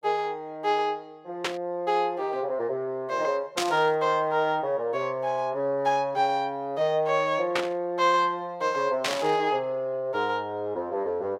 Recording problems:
static burst; 4 times, first at 1.5 s; peak +3 dB vs average level

